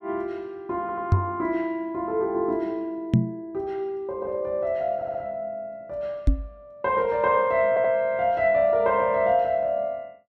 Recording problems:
stutter; at 1 s, at 5 s and at 7.5 s
microphone thump; at 1 s, at 3 s and at 6.5 s; peak +9 dB vs average level

